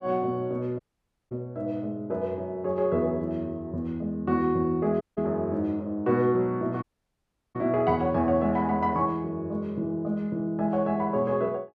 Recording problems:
dropout; at 1 s for 0.5 s, at 5 s and at 7 s for 0.5 s

